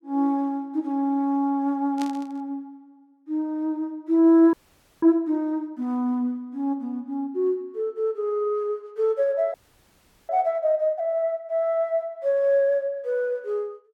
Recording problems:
static burst; at 2 s; peak -9 dB vs average level
frozen audio; at 4.5 s and at 9.5 s for 1 s

